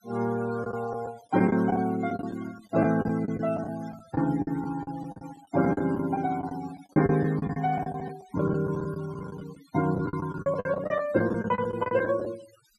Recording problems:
noise reduction artefacts; signal-to-artefact ratio 18 dB
packet loss; 14% of the sound replaced, filled with the last packet

